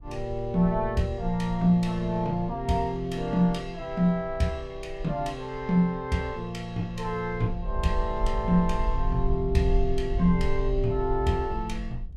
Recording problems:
wind noise; below 52 Hz, SNR 8 dB

